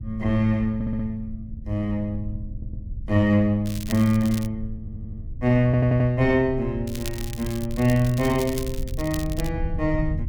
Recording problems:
rumble; below 88 Hz, SNR 12 dB
stutter; 4 times, first at 0.5 s
crackling; at 3.5 s and from 7 to 9.5 s; loose cable, SNR 15 dB

